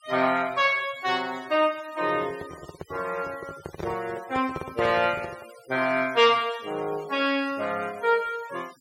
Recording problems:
noise reduction artefacts; signal-to-artefact ratio 21 dB
handling noise; from 2 to 5.5 s; peak -5 dB vs average level

